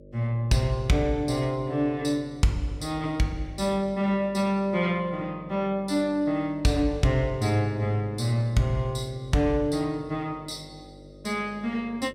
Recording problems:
mains hum; 50 Hz, harmonics up to 600 Hz, SNR 22 dB

